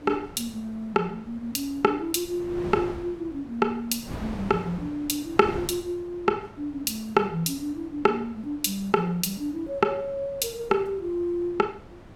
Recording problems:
wind on the microphone; below 600 Hz, SNR 15 dB

